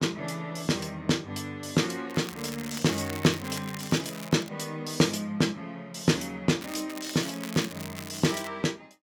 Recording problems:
crackle; from 2 to 4.5 s and from 6.5 to 8.5 s; loose cable, SNR 13 dB

